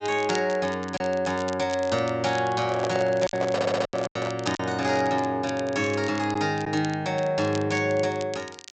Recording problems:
low-pass filter; nothing above 8 kHz
crackling; vinyl, SNR 17 dB
packet loss; 4% of the sound replaced, filled with silence
handling noise; from 2.5 to 4.5 s; peak 0 dB vs average level
stutter; at 3.5 s

